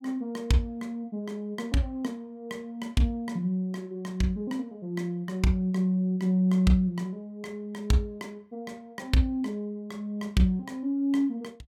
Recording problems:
none

